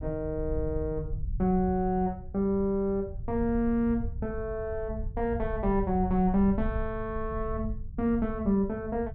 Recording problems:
low-frequency rumble; below 88 Hz, SNR 9 dB

